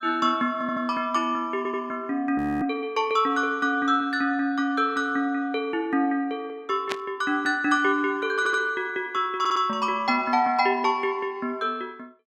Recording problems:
stutter; 4 times, first at 0.5 s
frozen audio; at 2.5 s
static burst; at 7 s; peak -1 dB vs average level

